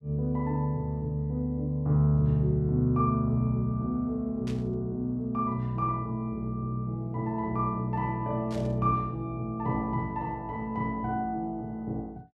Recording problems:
static burst; at 4.5 s and at 8.5 s; peak -12 dB vs average level

